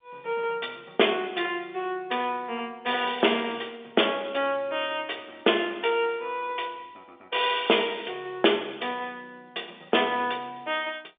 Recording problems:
phone line; 280 Hz to 3.6 kHz, G.711

